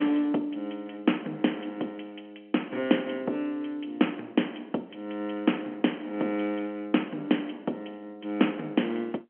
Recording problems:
phone line; 220 Hz to 3.3 kHz, G.711

